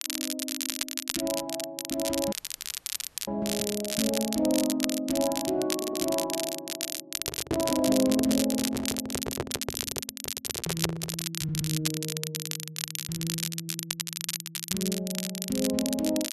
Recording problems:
crackle; vinyl, SNR 2 dB
dropout; at 2.5 s for 1 s
stutter; 4 times, first at 6 s
microphone handling noise; from 7 to 11 s; peak +4 dB vs average level

